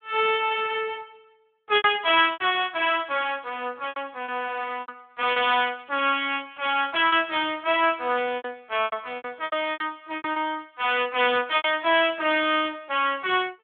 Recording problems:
telephone audio; 280 Hz to 3.5 kHz, Speex
packet loss; 9% of the sound replaced, filled with repeated pitch periods

